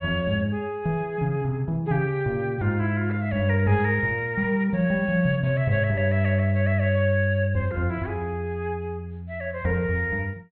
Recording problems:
treble missing; nothing above 4.2 kHz

